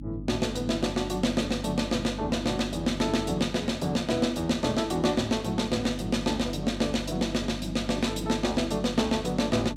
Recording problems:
electrical hum; 50 Hz, harmonics up to 300 Hz, SNR 11 dB

